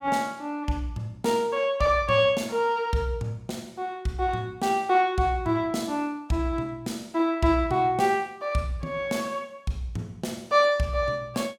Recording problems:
none

